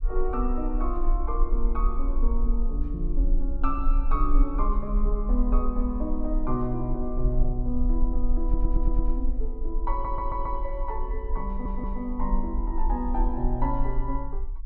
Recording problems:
low-frequency rumble; below 40 Hz, SNR -2 dB
stutter; at 8.5 s, at 10 s and at 11 s

